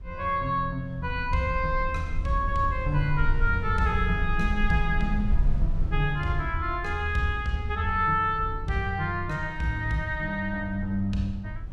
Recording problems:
low-frequency rumble; below 58 Hz, SNR 6 dB

